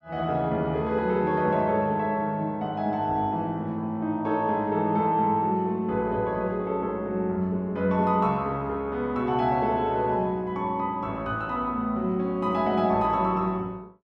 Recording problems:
none

